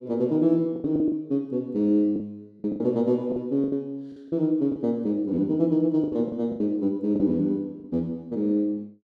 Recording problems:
packet loss; 10% of the sound replaced, filled with the last packet

